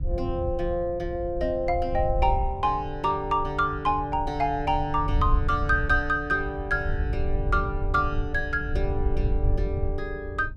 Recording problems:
wind noise; below 78 Hz, SNR 5 dB

